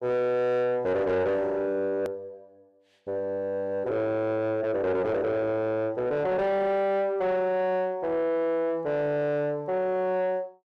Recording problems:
distortion; soft clipping, signal-to-distortion ratio 10 dB
click at an edit; at 2 s

